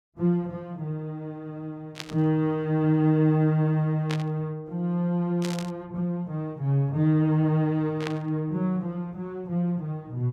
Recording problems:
static burst; 4 times, first at 2 s; peak -4 dB vs average level

